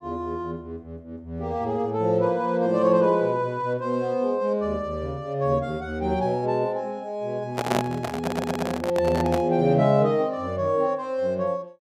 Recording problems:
handling noise; from 7.5 to 9.5 s; peak +4 dB vs average level
stutter; at 8 s

